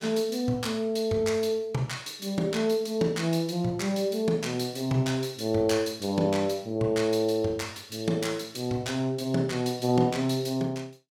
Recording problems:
none

